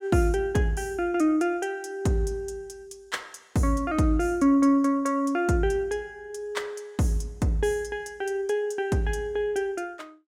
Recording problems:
none

